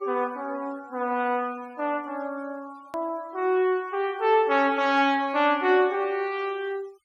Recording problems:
denoising artefacts; signal-to-artefact ratio 26 dB
hard cut with a click; at 3 s

